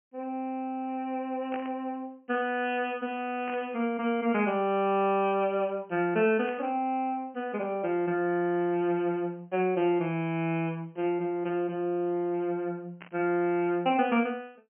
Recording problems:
low-pass filter; nothing above 3 kHz
static burst; 4 times, first at 1.5 s; peak -8 dB vs average level

